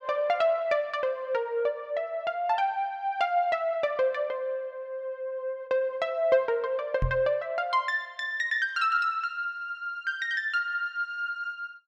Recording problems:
microphone thump; at 7 s; peak +3 dB vs average level

